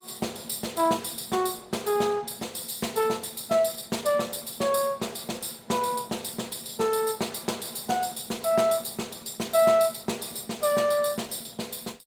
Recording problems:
codec artefacts; Opus, log-spectral distance 6 dB

